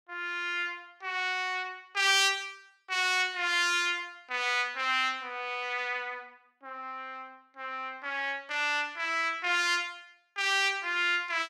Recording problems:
none

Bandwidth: 16.5 kHz